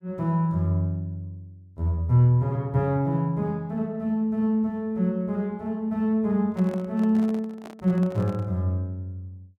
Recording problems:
microphone handling noise; from 6.5 to 8.5 s; peak -12 dB vs average level

